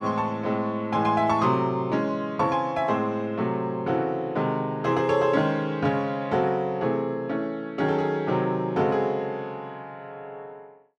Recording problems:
none

